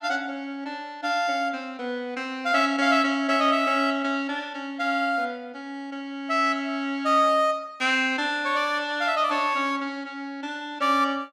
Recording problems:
none

